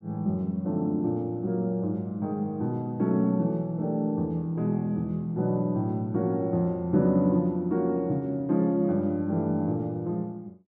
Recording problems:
none

